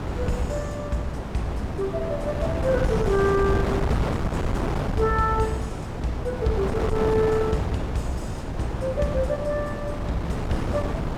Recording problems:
wind noise; below 530 Hz, SNR 1 dB

